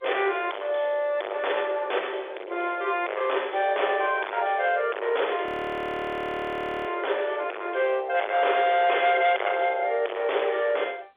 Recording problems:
phone line; 340 Hz to 3.6 kHz, G.711
distorted audio; soft clipping, signal-to-distortion ratio 6 dB
audio freezing; at 5.5 s for 1.5 s

